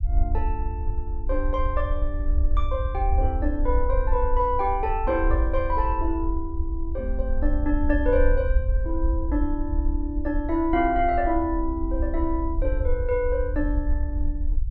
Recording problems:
low-frequency rumble; below 60 Hz, SNR 1 dB

